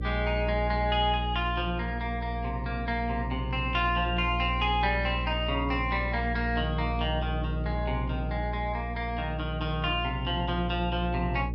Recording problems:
hum; 60 Hz, harmonics up to 540 Hz, SNR 4 dB

